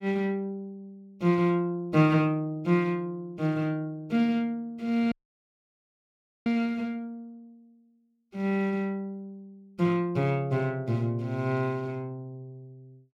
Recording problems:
dropout; at 5 s for 1.5 s

